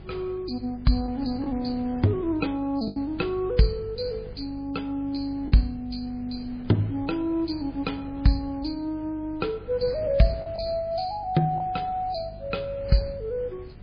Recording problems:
lossy compression; MP3, log-spectral distance 3 dB, nothing above 4.6 kHz
hum; 50 Hz, harmonics up to 400 Hz, SNR 18 dB
wind on the microphone; below 310 Hz, SNR 18 dB
lost packets; 1.8% of the sound replaced, filled with the last packet

